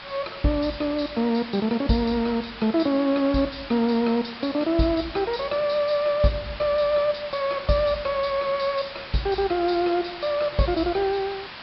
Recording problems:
treble missing; nothing above 5.3 kHz
background hiss; SNR 13 dB

